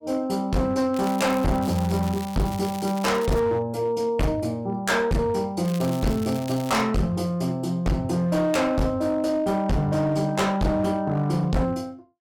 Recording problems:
distorted audio; hard clipping, signal-to-distortion ratio 6 dB
crackle; from 1 to 3.5 s and from 5.5 to 7 s; loose cable, SNR 17 dB

